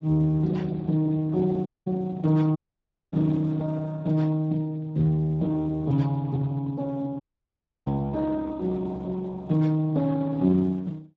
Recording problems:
codec artefacts; Speex, log-spectral distance 2 dB
dropout; at 1.5 s, at 2.5 s for 0.5 s and at 7 s for 0.5 s

